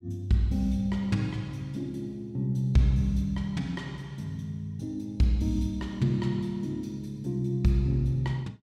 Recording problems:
none

